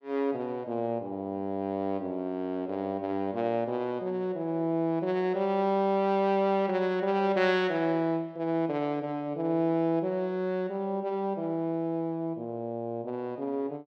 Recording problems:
none

